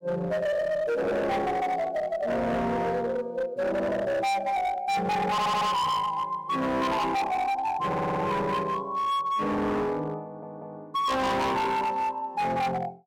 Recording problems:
distortion; hard clipping, uneven, signal-to-distortion ratio 6 dB
stutter; at 5.5 s, at 8 s and at 10 s

